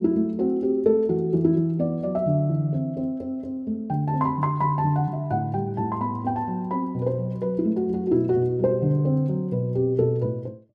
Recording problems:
none

